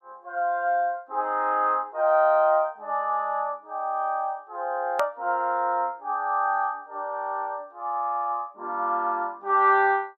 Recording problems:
click at an edit; at 5 s

